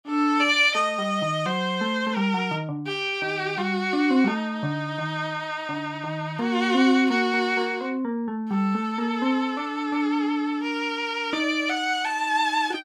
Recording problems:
none

